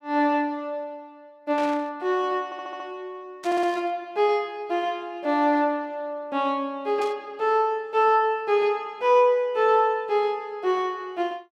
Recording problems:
burst of static; at 1.5 s, at 3.5 s and at 7 s; peak -11 dB vs average level
audio stuttering; at 2.5 s and at 3.5 s

